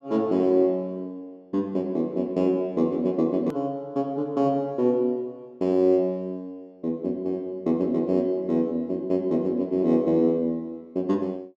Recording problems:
edit click; at 3.5 s

